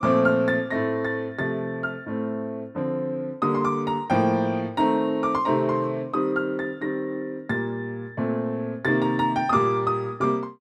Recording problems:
none

